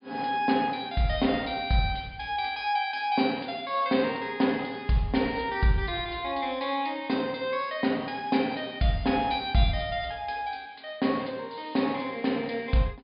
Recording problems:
low-pass filter; nothing above 5.1 kHz

